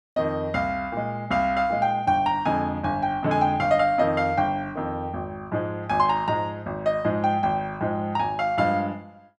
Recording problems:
none

